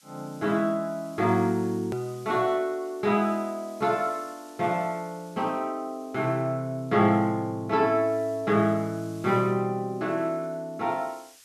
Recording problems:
hiss; SNR 26 dB
edit click; at 2 s

